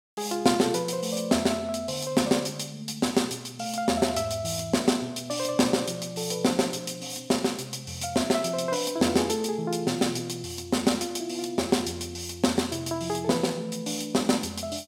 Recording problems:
none

